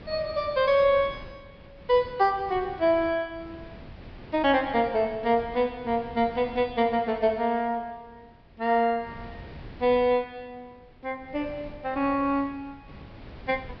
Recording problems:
treble cut off; nothing above 5.5 kHz
wind on the microphone; below 500 Hz, SNR 20 dB

